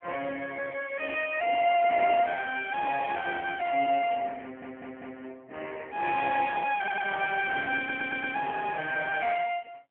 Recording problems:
phone line; 370 Hz to 3.1 kHz, AMR-NB
stutter; at 4.5 s, at 7 s and at 8 s

